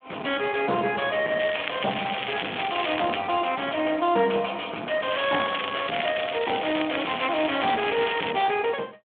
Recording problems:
telephone audio; 240 Hz to 3.4 kHz, Speex
distorted audio; soft clipping, signal-to-distortion ratio 9 dB
crackling; from 1.5 to 3 s and from 5 to 8.5 s; loose cable, SNR 6 dB

